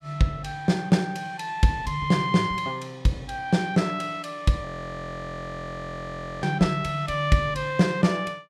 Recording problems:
frozen audio; at 4.5 s for 2 s

